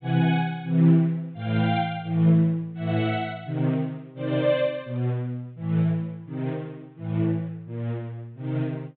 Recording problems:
low-pass filter; nothing above 4 kHz

